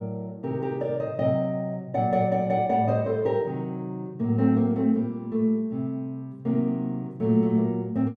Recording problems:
none

